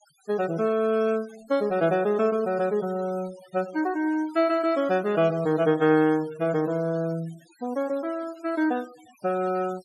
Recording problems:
noise reduction artefacts; signal-to-artefact ratio 23 dB

